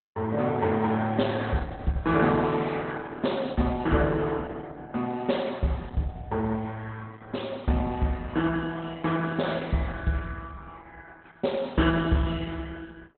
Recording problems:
codec artefacts; Opus, log-spectral distance 4 dB, nothing above 4 kHz

